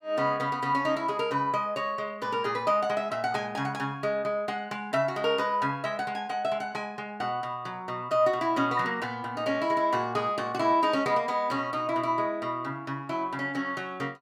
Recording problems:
none

